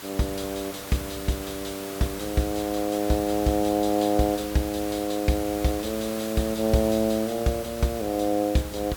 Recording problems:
hiss; slope -2 dB per octave, SNR 11 dB

